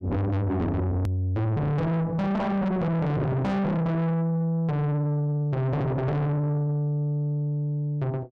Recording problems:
distortion; soft clipping, signal-to-distortion ratio 6 dB
edit click; at 1 s

